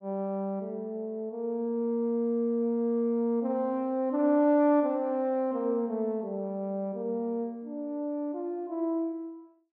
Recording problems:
none

